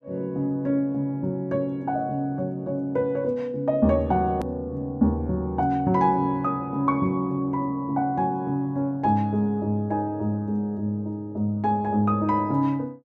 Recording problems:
edit click; at 4.5 s

